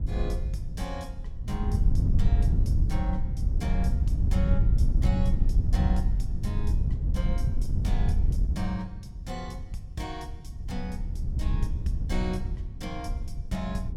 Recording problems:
wind on the microphone; below 88 Hz, SNR -8 dB

